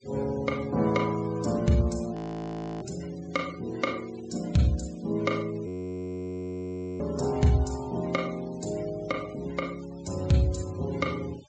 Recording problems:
low-pass filter; nothing above 8 kHz
denoising artefacts; signal-to-artefact ratio 22 dB
frozen audio; at 2 s for 0.5 s and at 5.5 s for 1.5 s

